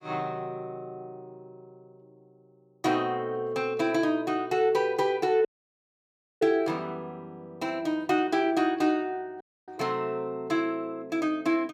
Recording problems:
dropout; at 5.5 s for 1 s and at 9.5 s

